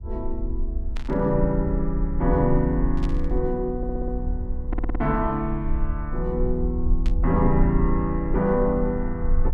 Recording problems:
low-frequency rumble; below 54 Hz, SNR 4 dB
static burst; at 1 s, at 3 s and at 7 s; peak -11 dB vs average level
audio stuttering; at 4 s and at 4.5 s

